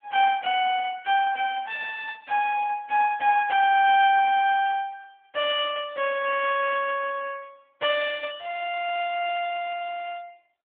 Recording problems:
telephone audio; 260 Hz to 3.3 kHz, AMR-NB

